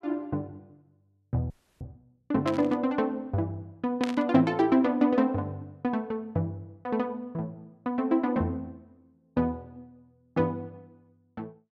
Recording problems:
frozen audio; at 1.5 s
burst of static; at 2.5 s and at 4 s; peak -1 dB vs average level

